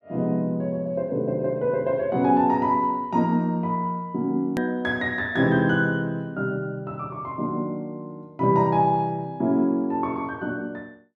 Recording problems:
hard cut with a click; at 4.5 s

